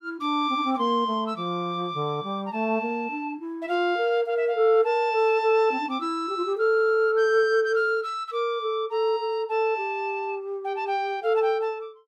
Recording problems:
none

